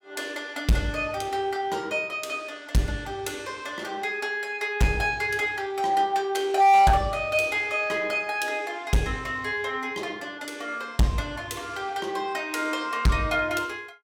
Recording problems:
distortion; hard clipping, signal-to-distortion ratio 12 dB

